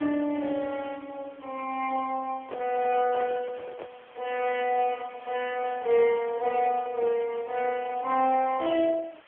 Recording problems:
phone line; 300 Hz to 3.3 kHz, AMR-NB
background hiss; SNR 25 dB
handling noise; from 2.5 to 4 s; peak -7 dB vs average level

